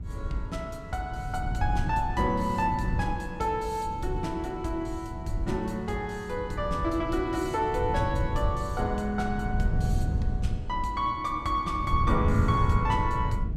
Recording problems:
wind noise; below 120 Hz, SNR 3 dB

